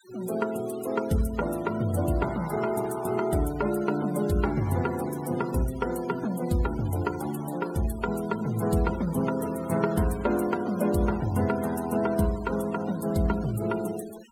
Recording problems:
noise reduction artefacts; signal-to-artefact ratio 18 dB

